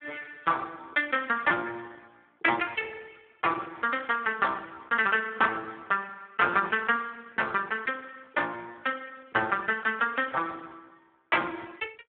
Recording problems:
phone line; 220 Hz to 3.7 kHz, Speex

